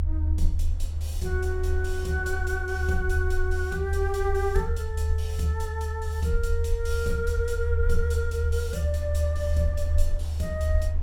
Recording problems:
rumble; below 78 Hz, SNR -3 dB
wind noise; below 480 Hz, SNR 20 dB

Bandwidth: 18 kHz